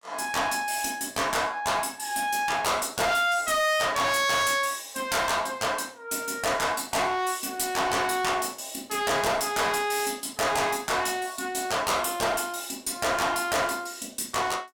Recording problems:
distortion; hard clipping, uneven, signal-to-distortion ratio 6 dB

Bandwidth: 17 kHz